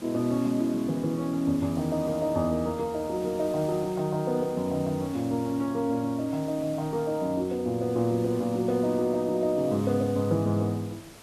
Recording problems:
hiss; slope -4 dB per octave, SNR 19 dB

